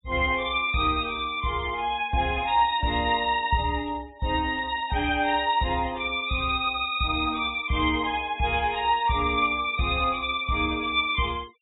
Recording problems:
treble missing; nothing above 4 kHz
denoising artefacts; signal-to-artefact ratio 24 dB

